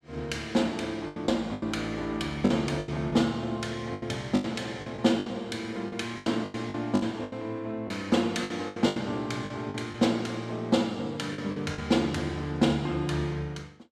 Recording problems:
packet loss; 11% of the sound replaced, filled with the last packet

